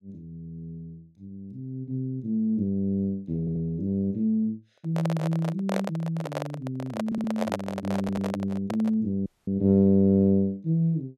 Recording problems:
audio stuttering; at 3.5 s, at 7 s and at 8 s
handling noise; from 4.5 to 9 s; peak +1 dB vs average level
audio cutting out; at 9.5 s

